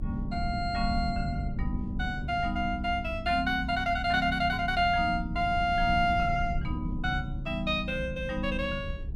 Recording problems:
low-frequency rumble; below 92 Hz, SNR 8 dB

